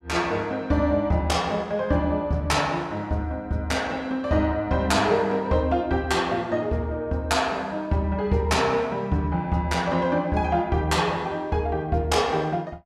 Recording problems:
none

